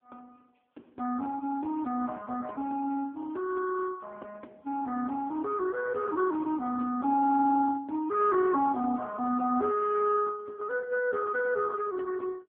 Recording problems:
telephone audio; 220 Hz to 2.5 kHz, AMR-NB

